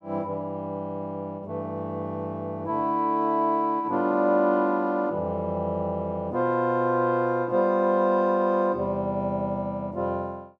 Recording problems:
none

